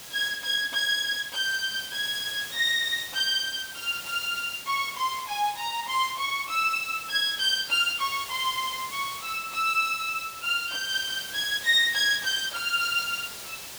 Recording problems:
hiss; slope 0 dB per octave, SNR 12 dB

